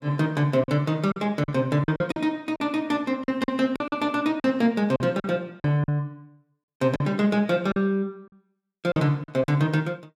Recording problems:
packet loss; 9% of the sound replaced, filled with silence

